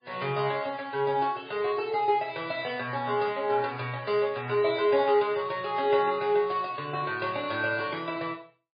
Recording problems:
codec artefacts; MP3, log-spectral distance 4 dB, nothing above 4.8 kHz

